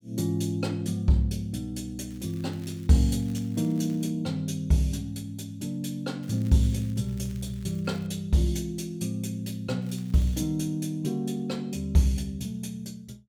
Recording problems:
crackle; from 2 to 4 s, from 6 to 8 s and at 10 s; loose cable, SNR 26 dB

